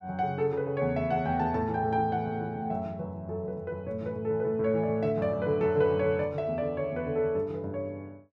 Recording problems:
none

